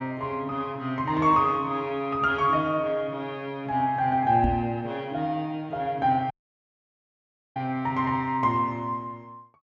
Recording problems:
microphone bump; at 4.5 s; peak +3 dB vs average level
dropout; at 6.5 s for 1.5 s

